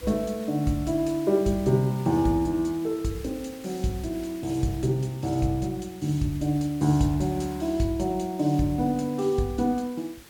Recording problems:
hiss; SNR 21 dB

